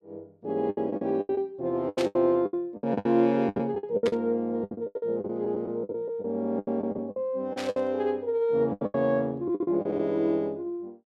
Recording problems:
packet loss; 17% of the sound replaced, filled with the last packet
static burst; at 2 s, at 4 s and at 7.5 s; peak -3 dB vs average level

